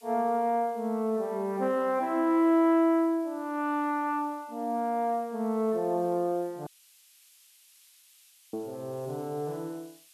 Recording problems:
hiss; SNR 28 dB
dropout; at 6.5 s for 2 s

